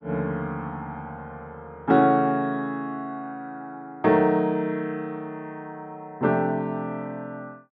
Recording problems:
none

